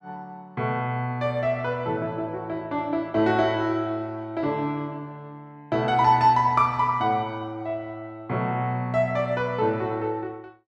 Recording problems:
none

